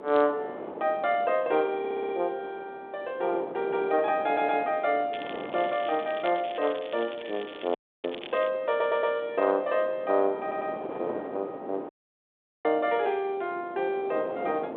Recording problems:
telephone audio; 300 Hz to 3.6 kHz, G.726
wind noise; below 740 Hz, SNR 13 dB
audio stuttering; 4 times, first at 2 s
crackling; from 5 to 8.5 s; loose cable, SNR 16 dB
dropout; at 8 s and at 12 s for 1 s

